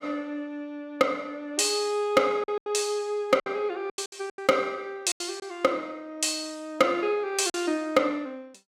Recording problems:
distortion; hard clipping, signal-to-distortion ratio 11 dB
packet loss; 6% of the sound replaced, filled with silence

